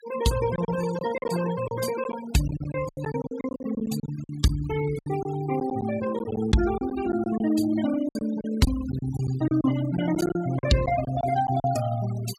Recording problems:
denoising artefacts; signal-to-artefact ratio 12 dB
packet loss; 12% of the sound replaced, filled with silence

